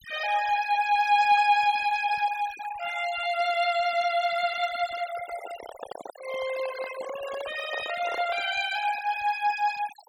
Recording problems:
denoising artefacts; signal-to-artefact ratio 15 dB
microphone handling noise; from 5 to 8.5 s; peak -6 dB vs average level

